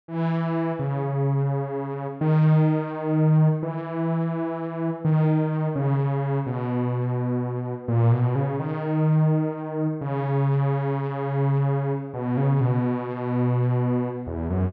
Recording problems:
none

